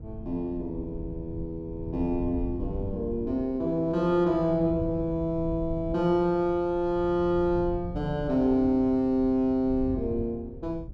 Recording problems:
low-frequency rumble; below 110 Hz, SNR 12 dB

